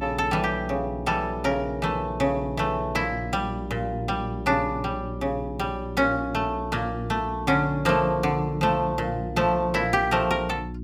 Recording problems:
hum; 60 Hz, harmonics up to 360 Hz, SNR 10 dB

